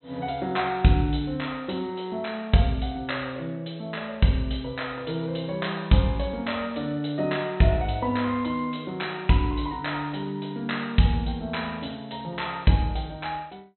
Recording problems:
treble missing; nothing above 4.1 kHz

